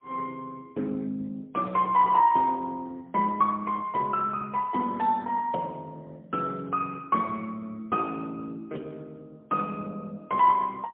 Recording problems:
telephone audio; 240 Hz to 3.6 kHz, AMR-NB, then MP3

